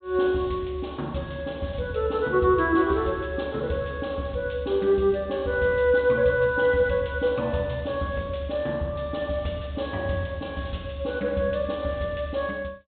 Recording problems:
treble cut off; nothing above 4 kHz

